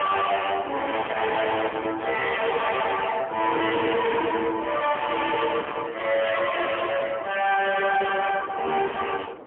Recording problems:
phone line; 240 Hz to 3.3 kHz, AMR-NB, then MP3
distortion; hard clipping, signal-to-distortion ratio 5 dB
wind noise; below 1.2 kHz, SNR 17 dB

